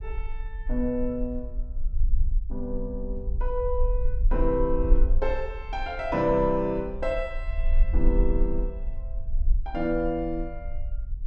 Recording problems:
low-frequency rumble; below 44 Hz, strongest tone 24 Hz, SNR 2 dB

